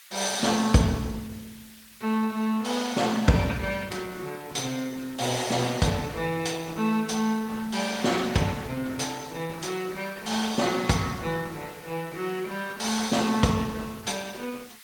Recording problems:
lossy codec; Opus, log-spectral distance 6 dB, nothing above 18.3 kHz
hiss; SNR 20 dB

